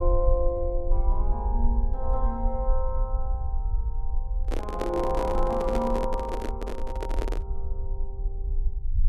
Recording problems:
low-frequency rumble; below 50 Hz, SNR 0 dB
microphone handling noise; from 4.5 to 7.5 s; peak +3 dB vs average level

